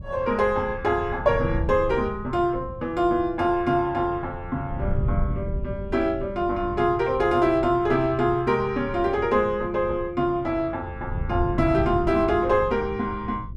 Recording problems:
wind noise; below 140 Hz, SNR 10 dB

